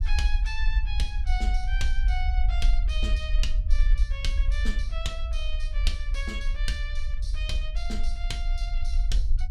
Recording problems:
low-frequency rumble; below 48 Hz, SNR -7 dB

